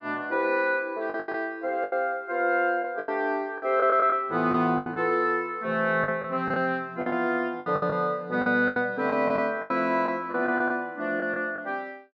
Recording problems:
packet loss; 11% of the sound replaced, filled with the last packet

